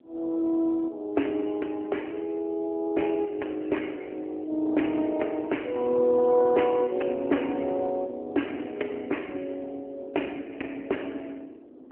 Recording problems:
telephone audio; 220 Hz to 3.1 kHz, AMR-NB
wind on the microphone; below 420 Hz, SNR 20 dB

